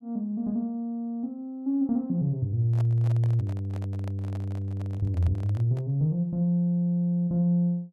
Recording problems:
microphone handling noise; from 2.5 to 6 s; peak -12 dB vs average level

